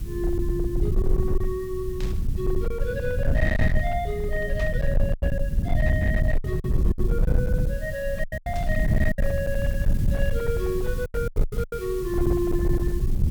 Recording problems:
distorted audio; hard clipping, uneven, signal-to-distortion ratio 10 dB
background hiss; slope -1 dB per octave, SNR 18 dB
low-frequency rumble; below 98 Hz, SNR -3 dB
packet loss; 6% of the sound replaced, filled with silence
burst of static; at 2 s, at 4.5 s and at 8.5 s; peak -7 dB vs average level

